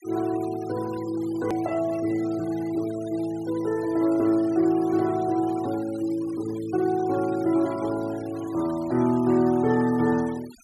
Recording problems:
denoising artefacts; signal-to-artefact ratio 21 dB
click at an edit; at 1.5 s

